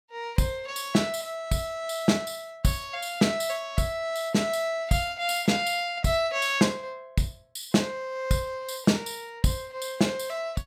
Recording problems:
none

